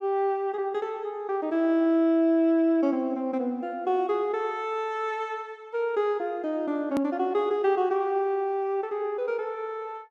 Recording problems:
click at an edit; at 7 s

